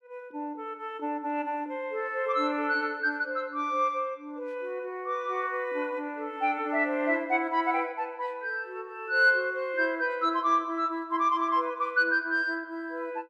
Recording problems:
none

